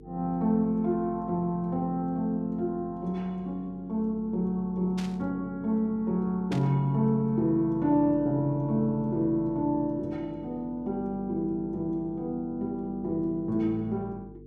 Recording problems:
hum; 50 Hz, harmonics up to 450 Hz, SNR 19 dB
burst of static; at 5 s and at 6.5 s; peak -7 dB vs average level

